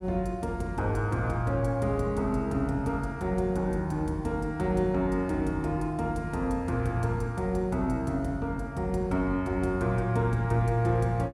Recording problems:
none

